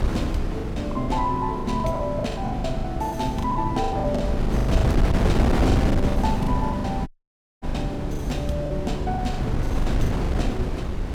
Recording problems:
hum; 60 Hz, harmonics up to 540 Hz, SNR 20 dB
wind on the microphone; below 230 Hz, SNR -1 dB
packet loss; 15% of the sound replaced, filled with the last packet
dropout; at 7 s for 0.5 s

